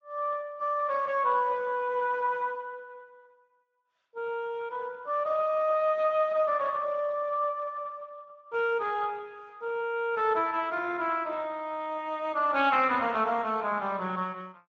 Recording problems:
lossy compression; Speex, log-spectral distance 3 dB

